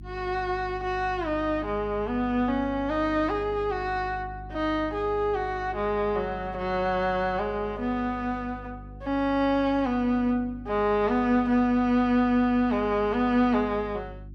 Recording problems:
hum; 50 Hz, harmonics up to 350 Hz, SNR 17 dB

